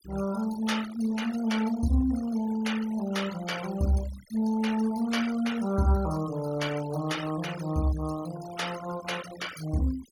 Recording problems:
noise reduction artefacts; signal-to-artefact ratio 14 dB

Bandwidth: 17.5 kHz